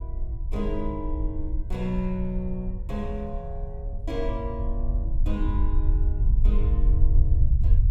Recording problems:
rumble; below 62 Hz, SNR -6 dB

